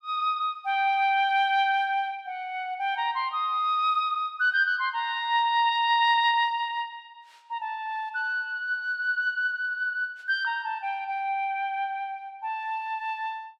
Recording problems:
none

